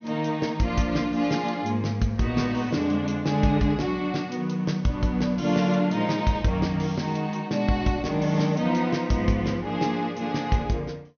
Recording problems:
treble cut off; nothing above 6.4 kHz

